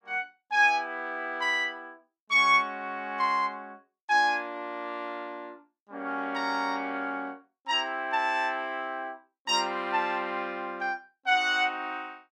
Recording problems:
none

